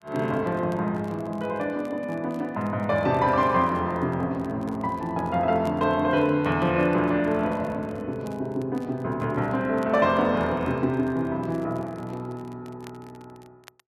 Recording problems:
crackle; vinyl, SNR 30 dB

